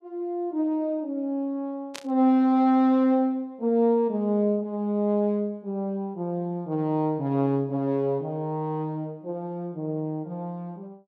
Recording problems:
static burst; at 2 s; peak -6 dB vs average level

